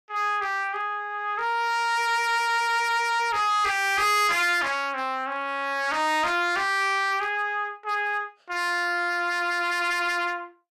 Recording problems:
distorted audio; hard clipping, signal-to-distortion ratio 7 dB

